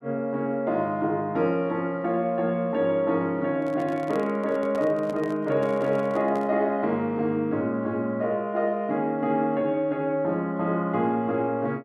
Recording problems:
microphone handling noise; from 3.5 to 6.5 s; peak -9 dB vs average level

